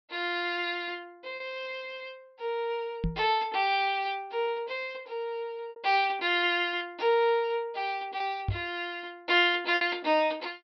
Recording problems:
treble cut off; nothing above 5.5 kHz
packet loss; 3% of the sound replaced, filled with repeated pitch periods
microphone thump; at 3 s and at 8.5 s; peak +2 dB vs average level

